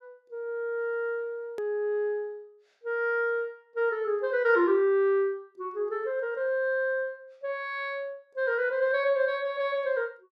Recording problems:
hard cut with a click; at 1.5 s

